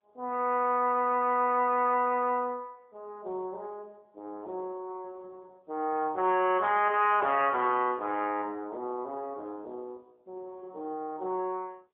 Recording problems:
phone line; 260 Hz to 3.3 kHz, AMR-NB, then MP3

